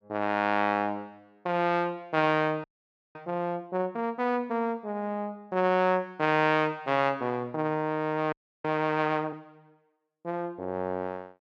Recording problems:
frozen audio; at 2.5 s for 0.5 s and at 8.5 s

